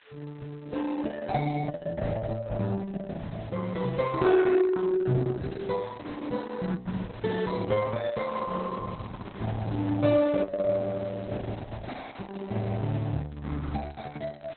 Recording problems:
codec artefacts; Opus, log-spectral distance 7 dB, nothing above 4.1 kHz
background hiss; SNR 23 dB
microphone handling noise; from 7 to 10 s; peak -6 dB vs average level

